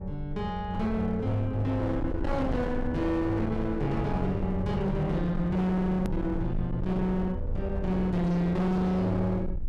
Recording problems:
distortion; hard clipping, signal-to-distortion ratio 8 dB
rumble; below 120 Hz, SNR 9 dB
click at an edit; at 6 s

